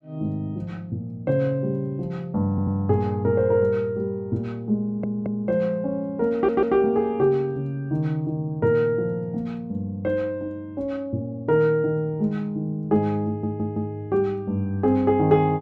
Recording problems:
audio stuttering; 4 times, first at 2.5 s

